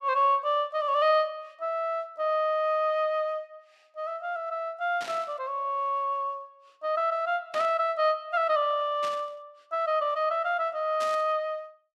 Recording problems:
static burst; 4 times, first at 5 s; peak -7 dB vs average level

